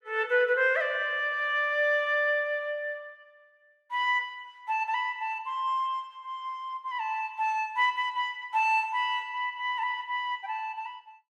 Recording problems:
none

